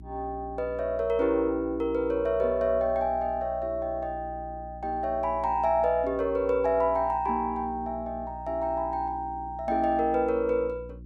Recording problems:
electrical hum; 60 Hz, harmonics up to 360 Hz, SNR 17 dB

